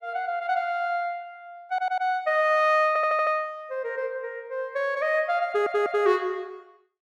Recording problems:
stutter; at 1.5 s, at 3 s and at 5.5 s

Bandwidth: 14 kHz